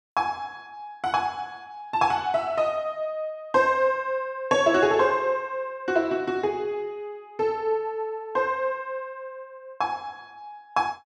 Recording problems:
none

